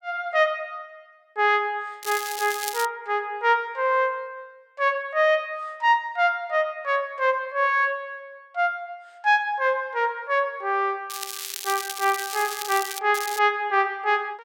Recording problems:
crackle; at 2 s, from 11 to 13 s and at 13 s; loose cable, SNR 9 dB

